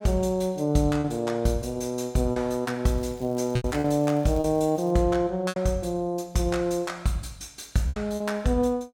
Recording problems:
packet loss; 5% of the sound replaced, filled with repeated pitch periods
crackling; from 3 to 5 s; loose cable, SNR 28 dB

